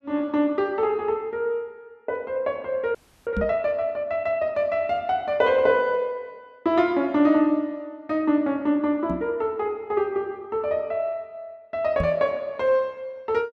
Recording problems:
frozen audio; at 3 s
microphone bump; at 3.5 s, at 9 s and at 12 s; peak 0 dB vs average level

